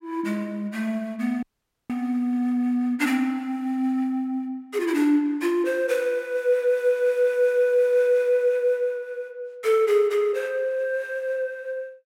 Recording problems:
dropout; at 1.5 s

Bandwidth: 16 kHz